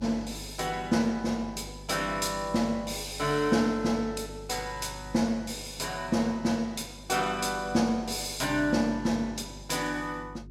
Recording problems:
hum; 50 Hz, harmonics up to 400 Hz, SNR 17 dB

